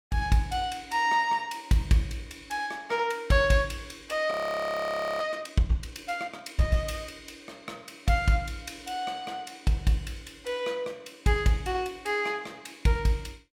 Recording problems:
frozen audio; at 4.5 s for 1 s

